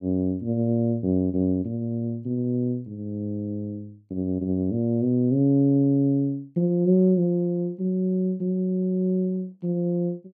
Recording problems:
none

